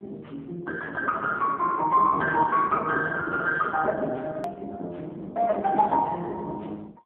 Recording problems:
phone line; 280 Hz to 2.8 kHz, AMR-NB
hard cut with a click; at 4.5 s

